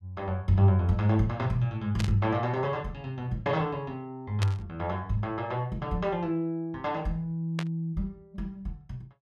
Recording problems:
burst of static; at 2 s, at 4.5 s and at 7.5 s; peak -1 dB vs average level

